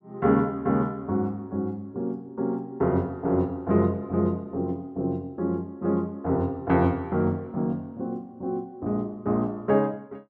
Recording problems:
none

